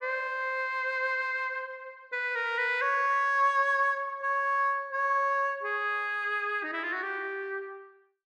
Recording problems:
none

